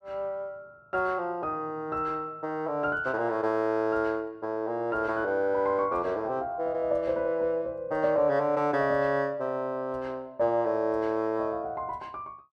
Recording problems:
none

